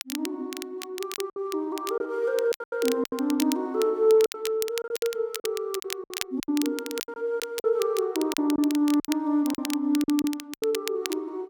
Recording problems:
crackling; vinyl, SNR 10 dB
packet loss; 11% of the sound replaced, filled with silence

